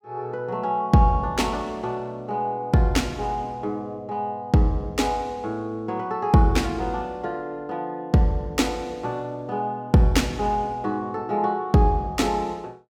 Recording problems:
none

